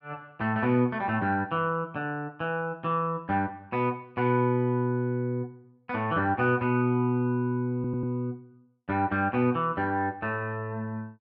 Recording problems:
audio stuttering; at 8 s

